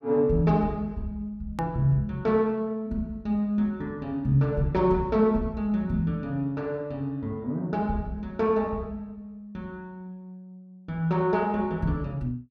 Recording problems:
hard cut with a click; at 1.5 s

